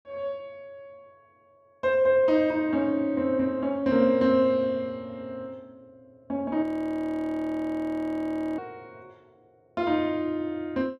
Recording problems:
frozen audio; at 6.5 s for 2 s

